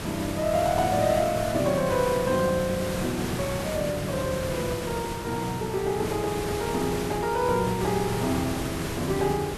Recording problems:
background hiss; slope -4 dB per octave, SNR 5 dB

